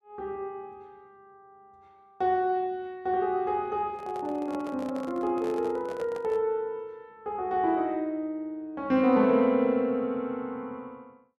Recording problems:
microphone handling noise; from 4 to 6.5 s; peak -9 dB vs average level

